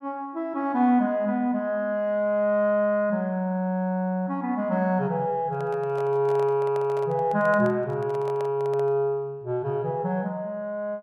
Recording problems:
handling noise; from 5.5 to 9 s; peak -8 dB vs average level

